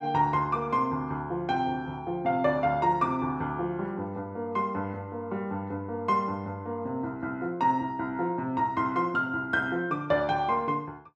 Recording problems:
none

